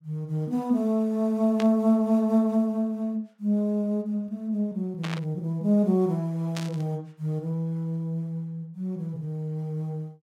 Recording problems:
static burst; at 1.5 s, at 5 s and at 6.5 s; peak -5 dB vs average level

